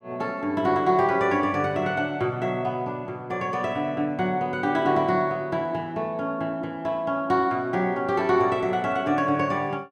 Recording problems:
none

